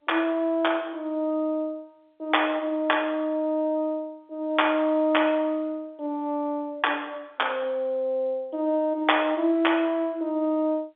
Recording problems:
telephone audio; 260 Hz to 3.6 kHz, G.711

